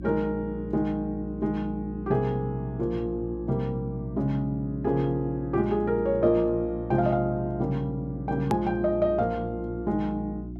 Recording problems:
hum; 60 Hz, harmonics up to 360 Hz, SNR 10 dB
click at an edit; at 8.5 s

